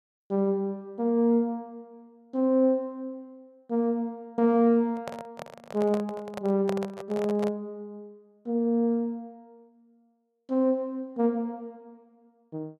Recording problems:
microphone handling noise; from 5 to 7.5 s; peak -2 dB vs average level

